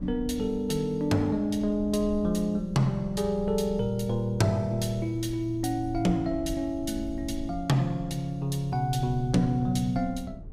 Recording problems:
rumble; below 110 Hz, SNR 15 dB

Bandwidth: 15.5 kHz